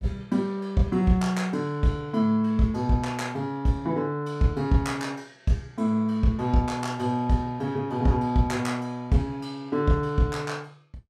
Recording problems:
none

